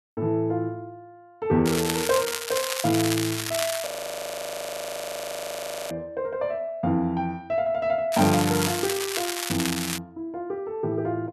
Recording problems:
crackling; from 1.5 to 4 s and from 8 to 10 s; loose cable, SNR 3 dB
frozen audio; at 4 s for 2 s

